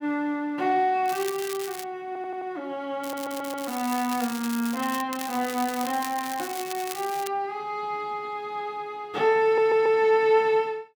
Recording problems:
crackle; at 1 s, from 3 to 5 s and from 5 to 7.5 s; loose cable, SNR 11 dB
stutter; at 2 s, at 3 s and at 9.5 s

